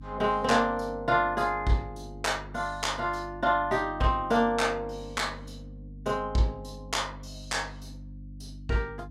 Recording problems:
hum; 50 Hz, harmonics up to 300 Hz, SNR 16 dB

